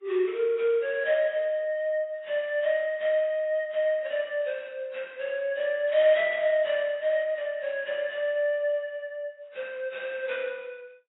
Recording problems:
codec artefacts; AAC, log-spectral distance 2 dB, nothing above 3.4 kHz

